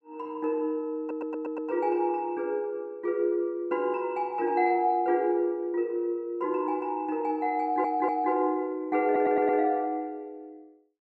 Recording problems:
stutter; at 1 s, at 7.5 s and at 9 s

